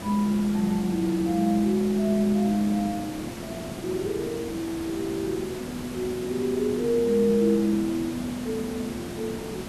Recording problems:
background hiss; slope -5 dB per octave, SNR 10 dB

